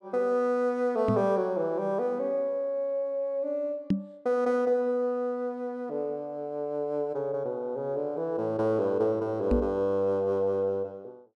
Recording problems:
knock on the microphone; at 1 s, at 4 s and at 9.5 s; peak +6 dB vs average level

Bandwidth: 12 kHz